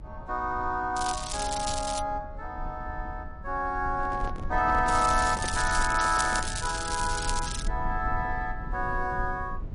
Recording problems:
lossy codec; MP3, log-spectral distance 5 dB, nothing above 9.8 kHz
low-frequency rumble; below 74 Hz, SNR 9 dB
crackle; from 1 to 2 s and from 5 to 7.5 s; loose cable, SNR 5 dB
handling noise; from 4 to 6.5 s; peak -4 dB vs average level

